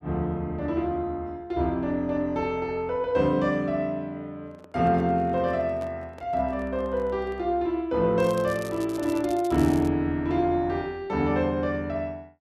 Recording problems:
handling noise; from 4.5 to 7.5 s; peak -11 dB vs average level
crackling; from 8 to 10 s; loose cable, SNR 19 dB

